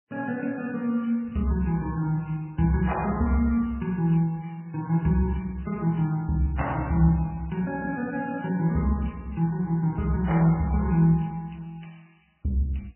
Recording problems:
lossy compression; MP3, log-spectral distance 4 dB, nothing above 2.9 kHz

